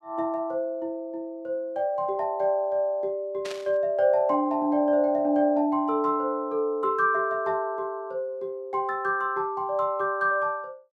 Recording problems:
static burst; at 3.5 s; peak -8 dB vs average level

